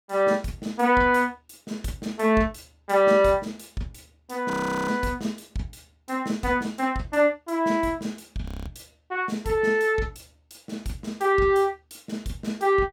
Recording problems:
audio freezing; at 4.5 s and at 8.5 s

